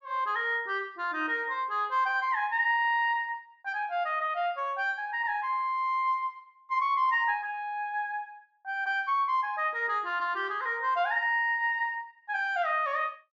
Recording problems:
low-pass filter; nothing above 8 kHz

